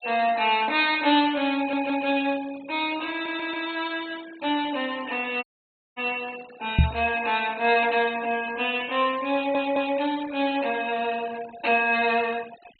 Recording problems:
low-pass filter; nothing above 4.4 kHz
denoising artefacts; signal-to-artefact ratio 18 dB
stutter; at 1.5 s, at 3 s and at 9.5 s
audio cutting out; at 5.5 s for 0.5 s
microphone thump; at 7 s; peak +9 dB vs average level

